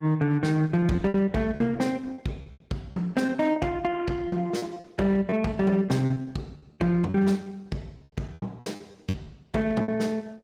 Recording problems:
codec artefacts; Opus, log-spectral distance 2 dB, nothing above 18 kHz
distorted audio; hard clipping, uneven, signal-to-distortion ratio 12 dB
packet loss; 12% of the sound replaced, filled with repeated pitch periods

